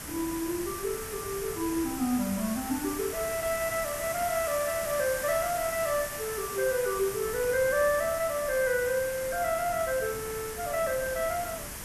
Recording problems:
hiss; SNR 7 dB
wind on the microphone; below 370 Hz, SNR 17 dB

